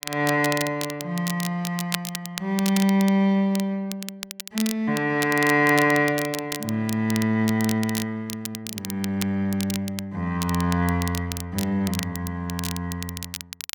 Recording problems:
crackle; vinyl, SNR 10 dB

